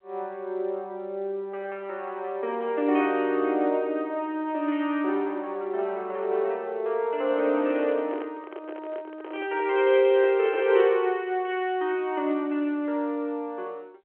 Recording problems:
phone line; 300 Hz to 3.3 kHz, G.711
microphone handling noise; from 7.5 to 11 s; peak -5 dB vs average level

